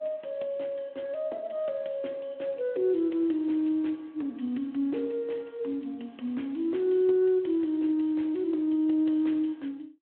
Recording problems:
telephone audio; 220 Hz to 3.3 kHz, Speex

